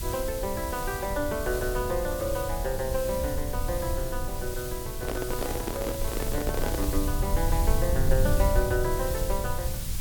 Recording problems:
hiss; slope +1 dB per octave, SNR 6 dB
low-frequency rumble; below 84 Hz, SNR 1 dB
handling noise; from 5 to 7 s; peak +3 dB vs average level

